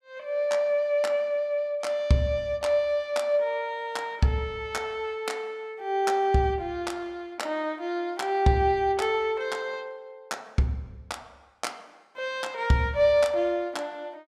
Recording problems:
none

